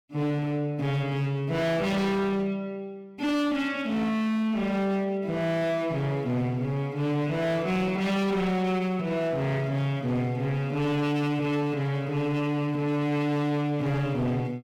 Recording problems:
distorted audio; hard clipping, signal-to-distortion ratio 7 dB

